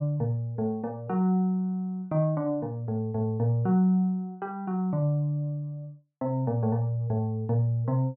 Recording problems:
none

